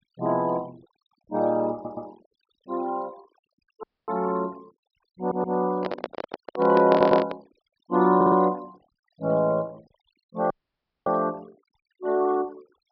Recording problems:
low-pass filter; nothing above 5.5 kHz
noise reduction artefacts; signal-to-artefact ratio 28 dB
stutter; 4 times, first at 1.5 s
dropout; at 4 s and at 11 s for 0.5 s
handling noise; from 6 to 7.5 s; peak +1 dB vs average level

